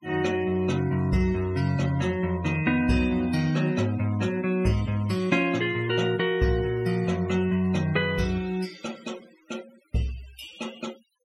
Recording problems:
noise reduction artefacts; signal-to-artefact ratio 21 dB

